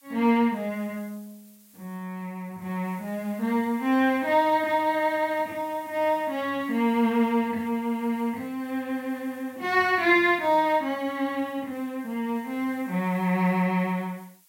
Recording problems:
background hiss; SNR 27 dB

